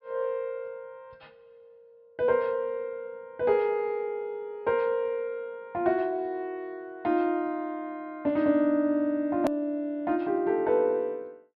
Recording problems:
low-pass filter; nothing above 5.5 kHz
hard cut with a click; at 9.5 s

